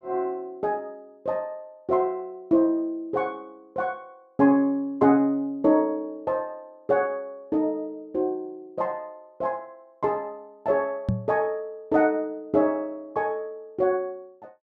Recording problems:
microphone thump; at 11 s; peak +5 dB vs average level

